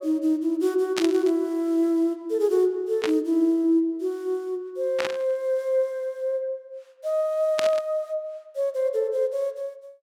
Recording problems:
burst of static; 4 times, first at 1 s; peak +1 dB vs average level

